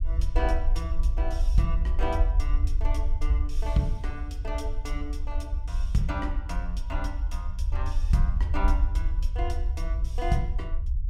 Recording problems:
rumble; below 58 Hz, SNR -4 dB

